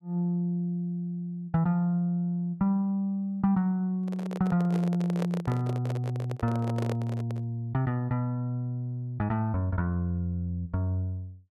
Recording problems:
microphone handling noise; from 4 to 7.5 s; peak -2 dB vs average level

